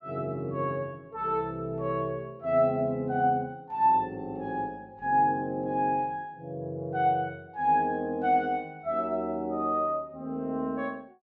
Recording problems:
none

